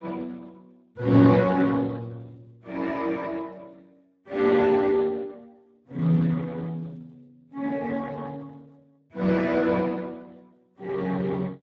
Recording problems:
lossy compression; Speex, log-spectral distance 3 dB

